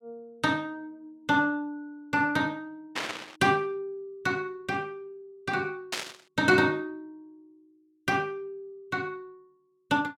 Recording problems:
static burst; at 3 s and at 6 s; peak +2 dB vs average level

